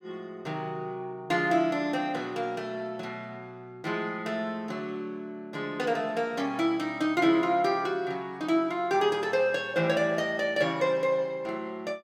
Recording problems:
none

